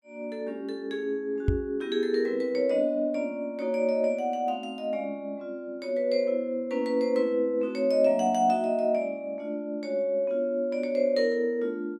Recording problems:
microphone thump; at 1.5 s; peak +6 dB vs average level

